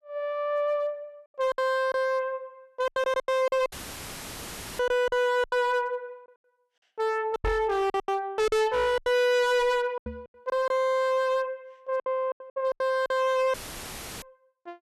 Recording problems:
distortion; hard clipping, uneven, signal-to-distortion ratio 5 dB
packet loss; 12% of the sound replaced, filled with silence
dropout; at 3.5 s for 1 s and at 14 s for 0.5 s; filled with static
knock on the microphone; at 7.5 s and at 10 s; peak 0 dB vs average level

